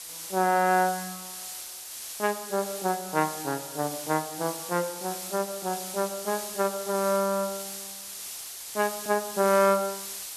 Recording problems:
hiss; slope +2 dB per octave, SNR 8 dB

